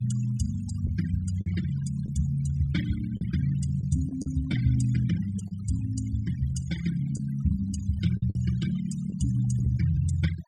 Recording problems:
noise reduction artefacts; signal-to-artefact ratio 14 dB
packet loss; 4% of the sound replaced, filled with the last packet

